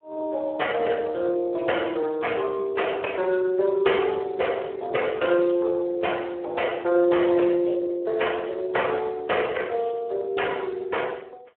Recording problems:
phone line; 320 Hz to 3.2 kHz, Speex

